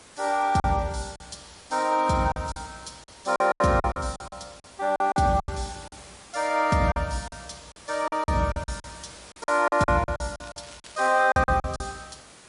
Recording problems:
lossy codec; MP3, log-spectral distance 10 dB, nothing above 10.4 kHz
background hiss; slope -2 dB per octave, SNR 22 dB
lost packets; 14% of the sound replaced, filled with silence
crackling; at 10 s; loose cable, SNR 23 dB

